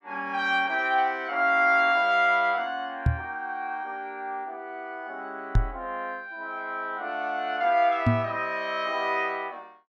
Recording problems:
knock on the microphone; at 3 s, at 5.5 s and at 8 s; peak +7 dB vs average level

